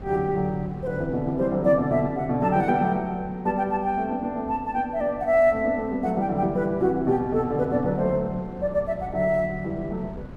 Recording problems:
wind on the microphone; below 310 Hz, SNR 17 dB

